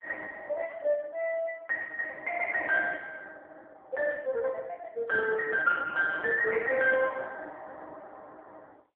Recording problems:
phone line; 280 Hz to 2.1 kHz, AMR-NB

